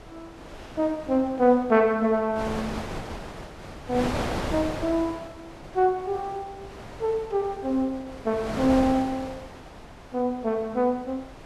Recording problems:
wind on the microphone; below 1.2 kHz, SNR 11 dB

